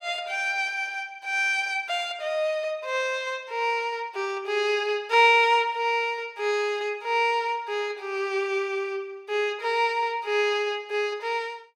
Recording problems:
none

